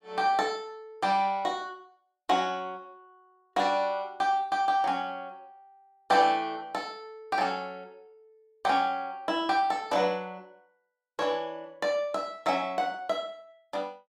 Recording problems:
none

